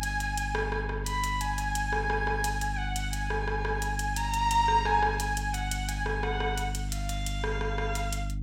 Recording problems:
mains hum; 50 Hz, harmonics up to 300 Hz, SNR 5 dB

